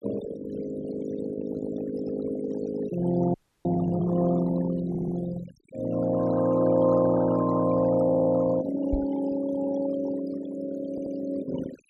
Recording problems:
noise reduction artefacts; signal-to-artefact ratio 13 dB
frozen audio; at 3.5 s
stutter; at 5 s, at 8 s and at 11 s
microphone bump; at 9 s; peak 0 dB vs average level

